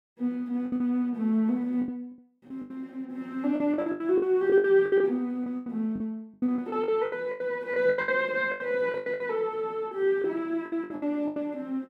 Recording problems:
lost packets; 16% of the sound replaced, filled with the last packet

